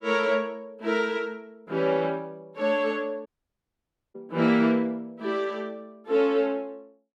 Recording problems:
dropout; at 3.5 s for 1 s

